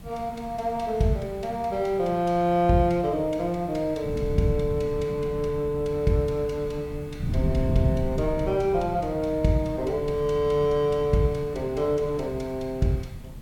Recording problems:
background hiss; slope -4 dB per octave, SNR 28 dB
wind on the microphone; below 160 Hz, SNR 10 dB

